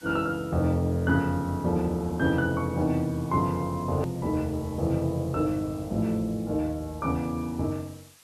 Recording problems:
hiss; slope +1 dB per octave, SNR 24 dB
hard cut with a click; at 4 s

